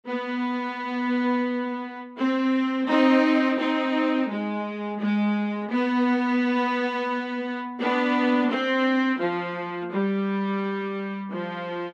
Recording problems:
none

